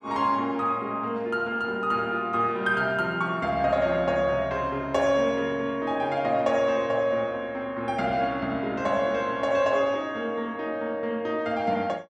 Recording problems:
none

